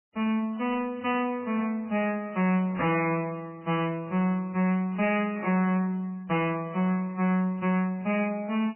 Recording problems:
codec artefacts; MP3, log-spectral distance 2 dB, nothing above 2.7 kHz
distortion; soft clipping, signal-to-distortion ratio 11 dB

